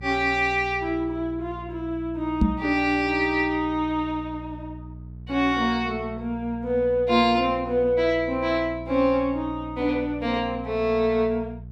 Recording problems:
mains hum; 60 Hz, harmonics up to 420 Hz, SNR 16 dB
knock on the microphone; at 2.5 s; peak +7 dB vs average level

